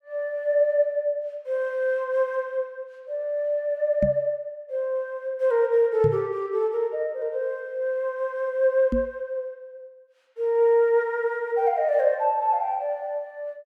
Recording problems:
microphone bump; at 4 s, at 6 s and at 9 s; peak +2 dB vs average level

